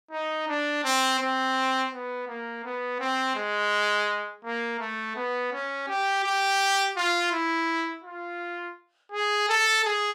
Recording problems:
none

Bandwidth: 16.5 kHz